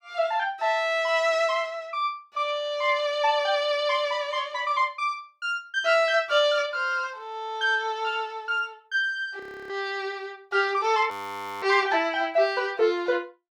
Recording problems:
frozen audio; at 9.5 s and at 11 s for 0.5 s

